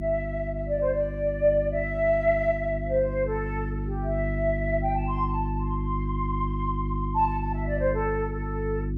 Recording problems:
electrical hum; 50 Hz, harmonics up to 350 Hz, SNR 3 dB

